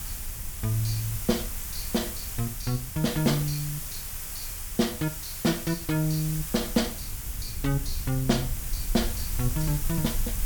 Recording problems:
background hiss; slope 0 dB per octave, SNR 6 dB
low-frequency rumble; below 68 Hz, SNR 10 dB

